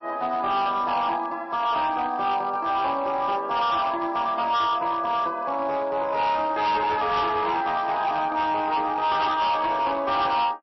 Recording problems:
lossy compression; MP3, log-spectral distance 2 dB, nothing above 5.7 kHz
distorted audio; hard clipping, signal-to-distortion ratio 10 dB

